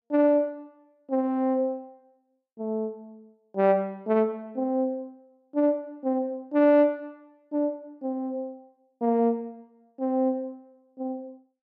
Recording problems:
none

